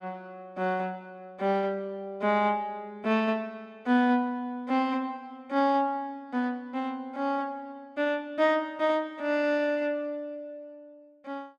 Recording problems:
none

